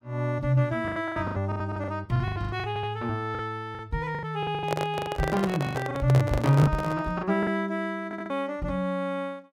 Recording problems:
lost packets; 15% of the sound replaced, filled with the last packet
stutter; at 2.5 s and at 8 s
microphone handling noise; from 4.5 to 7 s; peak +2 dB vs average level

